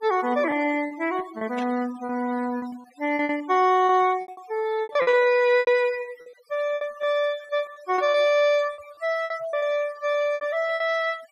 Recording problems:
noise reduction artefacts; signal-to-artefact ratio 20 dB
lost packets; 13% of the sound replaced, filled with repeated pitch periods
burst of static; at 1.5 s, at 5 s and at 8 s; peak -11 dB vs average level

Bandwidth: 15.5 kHz